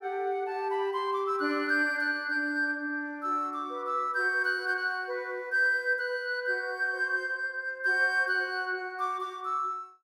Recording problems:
none

